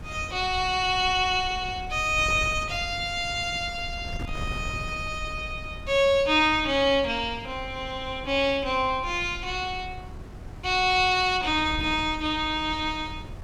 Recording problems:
wind on the microphone; below 150 Hz, SNR 14 dB

